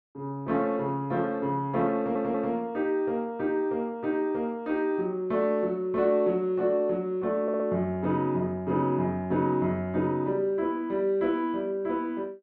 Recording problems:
stutter; at 2 s and at 7.5 s

